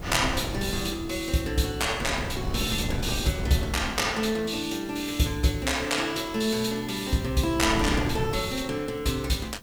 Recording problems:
background hiss; slope -4 dB per octave, SNR 24 dB
wind on the microphone; below 280 Hz, SNR 7 dB

